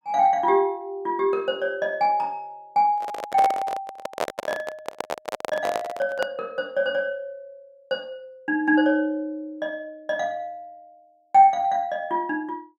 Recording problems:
handling noise; from 3 to 6.5 s; peak +3 dB vs average level

